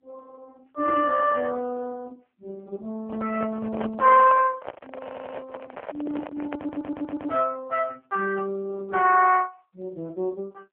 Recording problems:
phone line; 300 Hz to 2.6 kHz, AMR-NB
microphone handling noise; from 3 to 7.5 s; peak -5 dB vs average level
audio stuttering; at 5 s and at 6.5 s

